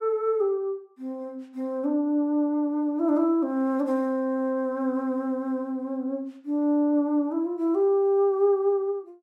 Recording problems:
none

